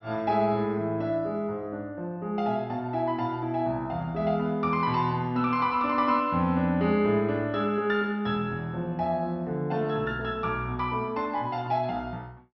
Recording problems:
low-pass filter; nothing above 5.9 kHz

